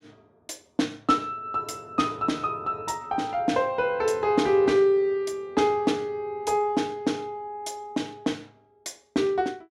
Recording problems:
none

